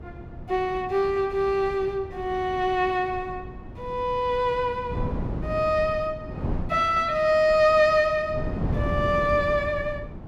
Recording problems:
wind noise; below 250 Hz, SNR 11 dB

